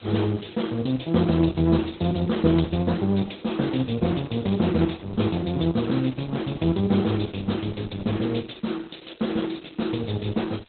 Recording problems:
codec artefacts; Opus, log-spectral distance 12 dB, nothing above 4 kHz
hiss; SNR 27 dB

